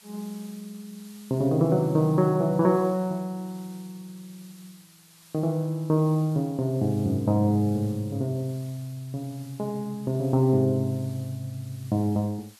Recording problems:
background hiss; slope +2 dB per octave, SNR 25 dB

